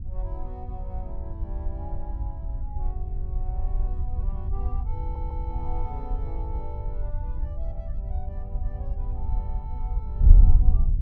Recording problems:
wind noise; below 64 Hz, SNR -15 dB
audio stuttering; at 5 s

